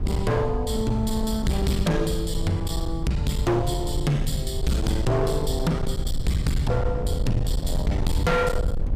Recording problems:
distorted audio; hard clipping, uneven, signal-to-distortion ratio 8 dB
low-frequency rumble; below 100 Hz, SNR 4 dB

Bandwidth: 14.5 kHz